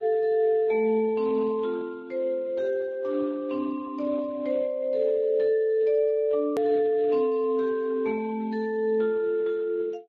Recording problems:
lossy compression; Speex, then Vorbis, log-spectral distance 2 dB, nothing above 13.1 kHz
edit click; at 6.5 s

